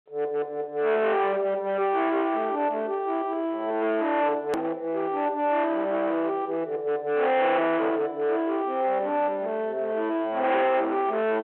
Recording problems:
phone line; 900 Hz to 3.5 kHz, G.726
distortion; hard clipping, signal-to-distortion ratio 8 dB
hard cut with a click; at 4.5 s

